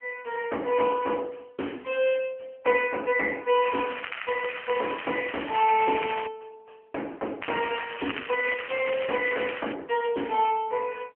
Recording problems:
telephone audio; 280 Hz to 3.1 kHz, AMR-NB
crackle; from 3.5 to 6.5 s and from 7.5 to 9.5 s; loose cable, SNR 9 dB

